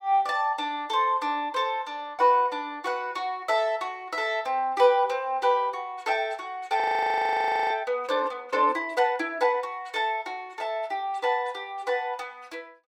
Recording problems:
frozen audio; at 7 s for 1 s

